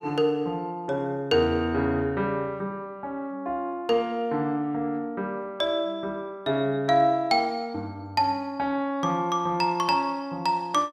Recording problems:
none

